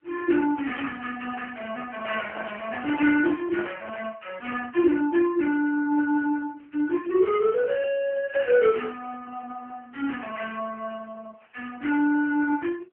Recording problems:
telephone audio; 260 Hz to 3.2 kHz, AMR-NB
microphone handling noise; from 2 to 4 s; peak -8 dB vs average level

